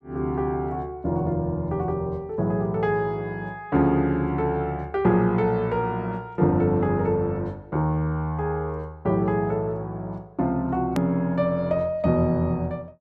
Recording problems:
click at an edit; at 11 s

